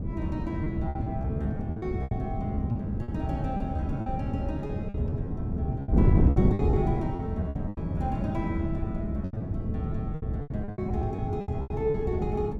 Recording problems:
wind noise; below 220 Hz, SNR -2 dB
packet loss; 14% of the sound replaced, filled with repeated pitch periods

